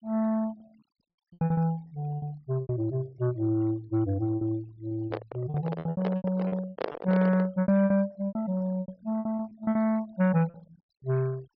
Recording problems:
treble cut off; nothing above 5.5 kHz
noise reduction artefacts; signal-to-artefact ratio 25 dB
packet loss; 16% of the sound replaced, filled with repeated pitch periods
handling noise; from 5 to 7.5 s; peak +1 dB vs average level

